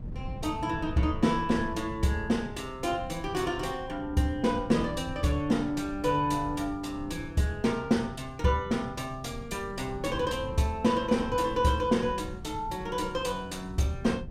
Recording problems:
wind on the microphone; below 150 Hz, SNR 13 dB

